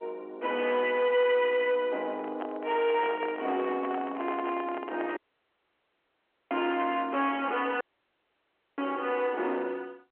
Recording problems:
telephone audio; 280 Hz to 3.3 kHz, G.711
distortion; soft clipping, signal-to-distortion ratio 11 dB
microphone handling noise; from 2 to 5 s; peak -4 dB vs average level
dropout; at 5 s for 1.5 s and at 8 s for 1 s

